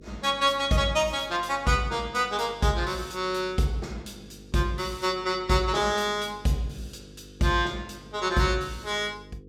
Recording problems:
hum; 50 Hz, harmonics up to 500 Hz, SNR 22 dB

